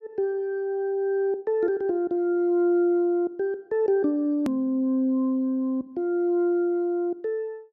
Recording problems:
hard cut with a click; at 4.5 s

